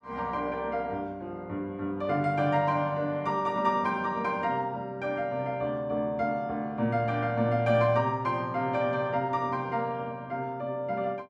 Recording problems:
none

